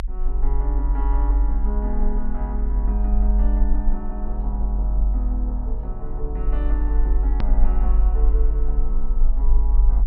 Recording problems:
treble cut off; nothing above 5.5 kHz
rumble; below 48 Hz, SNR -10 dB
edit click; at 7.5 s

